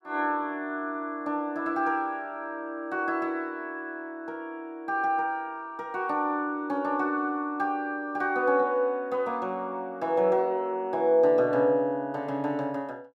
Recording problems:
none

